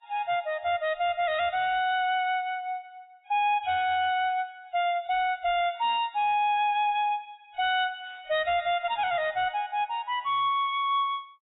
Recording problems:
lossy compression; AAC, log-spectral distance 2 dB, nothing above 3.5 kHz
distorted audio; hard clipping, signal-to-distortion ratio 9 dB

